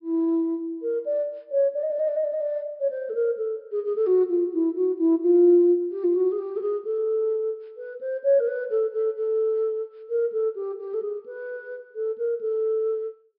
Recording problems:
treble cut off; nothing above 5.5 kHz

